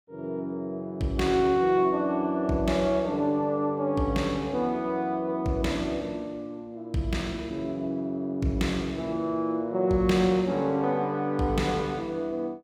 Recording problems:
none

